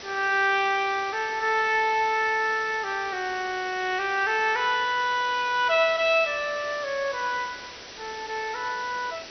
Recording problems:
low-pass filter; nothing above 6 kHz
background hiss; SNR 15 dB

